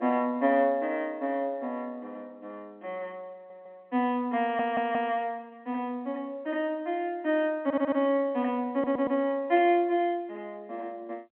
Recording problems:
phone line; 220 Hz to 3.5 kHz, G.711
stutter; 4 times, first at 3.5 s

